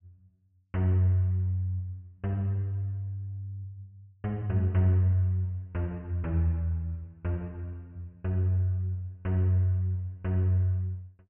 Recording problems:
treble cut off; nothing above 3 kHz

